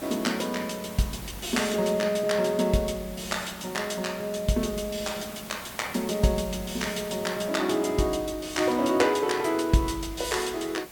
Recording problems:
hiss; slope -3 dB per octave, SNR 15 dB

